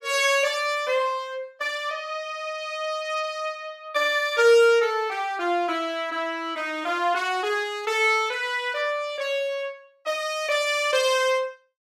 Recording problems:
none

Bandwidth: 14.5 kHz